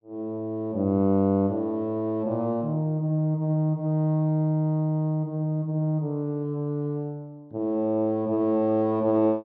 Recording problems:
none

